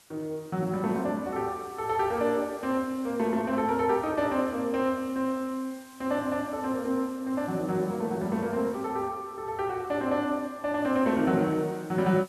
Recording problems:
hiss; slope -1 dB per octave, SNR 24 dB

